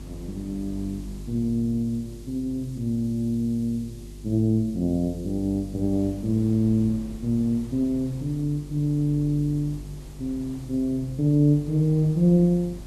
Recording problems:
electrical hum; 50 Hz, harmonics up to 400 Hz, SNR 17 dB
hiss; SNR 28 dB
wind on the microphone; below 360 Hz, SNR 25 dB

